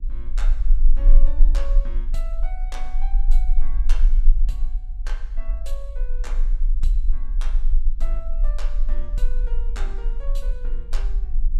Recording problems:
low-frequency rumble; below 34 Hz, strongest tone 20 Hz, SNR -16 dB
wind noise; below 150 Hz, SNR 12 dB

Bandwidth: 14.5 kHz